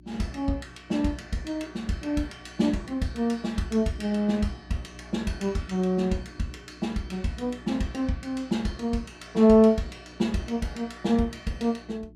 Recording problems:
electrical hum; 60 Hz, harmonics up to 360 Hz, SNR 23 dB

